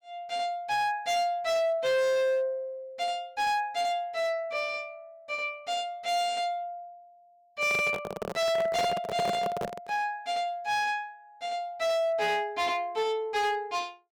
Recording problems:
distorted audio; hard clipping, signal-to-distortion ratio 7 dB
handling noise; from 7.5 to 10 s; peak 0 dB vs average level

